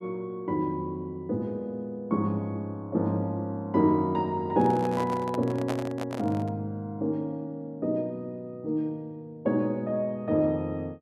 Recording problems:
handling noise; from 4.5 to 6.5 s; peak -1 dB vs average level

